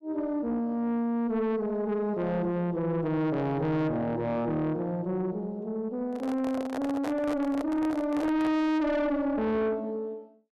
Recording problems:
distortion; soft clipping, signal-to-distortion ratio 7 dB
microphone handling noise; from 6 to 8.5 s; peak -2 dB vs average level

